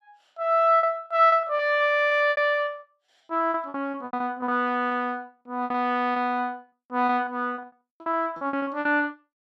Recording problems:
lost packets; 16% of the sound replaced, filled with repeated pitch periods

